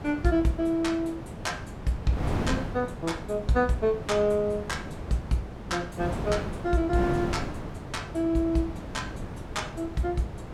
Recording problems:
wind on the microphone; below 460 Hz, SNR 7 dB

